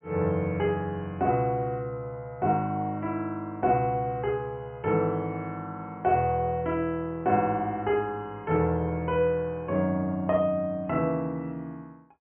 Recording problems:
treble cut off; nothing above 3.2 kHz

